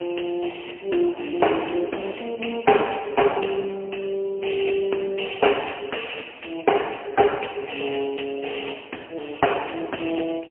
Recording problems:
telephone audio; 280 Hz to 3.1 kHz, AMR-NB, then MP3

